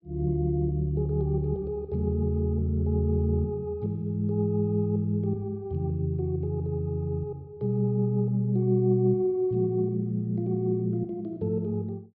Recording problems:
treble missing; nothing above 5.5 kHz

